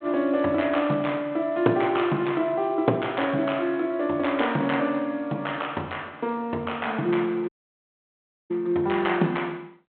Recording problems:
phone line; 150 Hz to 3.6 kHz, G.726
audio cutting out; at 7.5 s for 1 s

